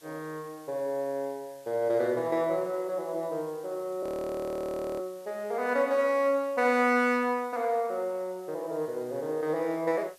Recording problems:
background hiss; slope +1 dB per octave, SNR 26 dB
frozen audio; at 4 s for 1 s

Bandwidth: 14 kHz